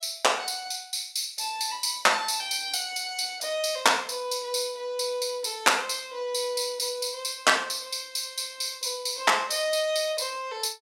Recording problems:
none

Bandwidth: 16 kHz